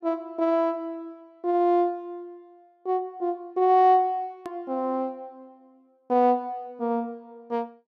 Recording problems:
hard cut with a click; at 4.5 s

